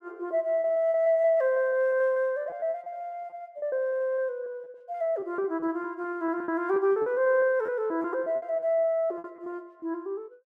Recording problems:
lost packets; 16% of the sound replaced, filled with repeated pitch periods

